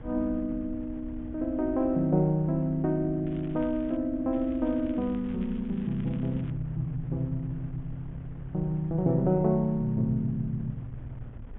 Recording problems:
low-pass filter; nothing above 3.5 kHz
wind noise; below 120 Hz, SNR 16 dB
crackling; at 3.5 s and from 4.5 to 6.5 s; loose cable, SNR 27 dB

